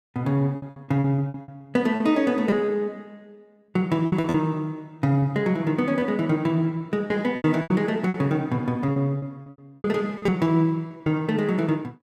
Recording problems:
lost packets; 12% of the sound replaced, filled with repeated pitch periods

